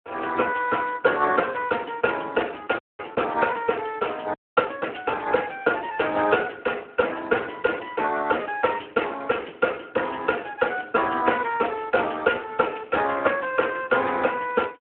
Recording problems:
telephone audio; 240 Hz to 2.7 kHz, Speex
frozen audio; at 3 s and at 4.5 s

